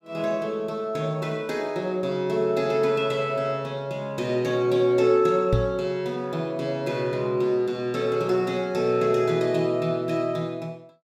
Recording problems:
microphone bump; at 5.5 s; peak +5 dB vs average level

